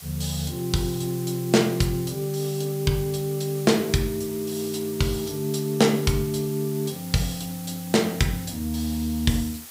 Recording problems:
hiss; slope +1 dB per octave, SNR 14 dB

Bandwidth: 15.5 kHz